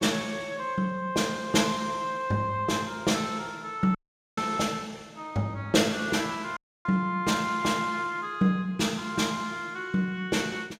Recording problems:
dropout; at 4 s and at 6.5 s

